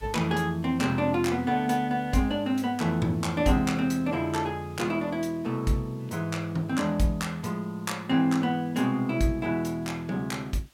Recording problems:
hiss; slope -1 dB per octave, SNR 29 dB

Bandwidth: 16.5 kHz